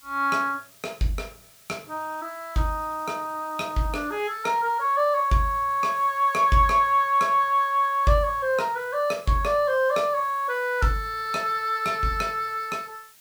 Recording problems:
background hiss; slope +2 dB per octave, SNR 25 dB

